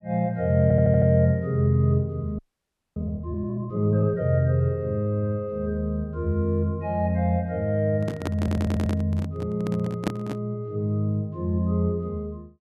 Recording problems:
audio stuttering; at 0.5 s and at 8.5 s
frozen audio; at 2.5 s for 0.5 s
microphone handling noise; from 8 to 10 s; peak +3 dB vs average level

